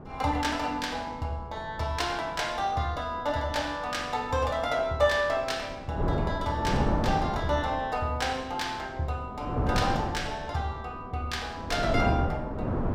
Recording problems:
wind on the microphone; below 450 Hz, SNR 3 dB

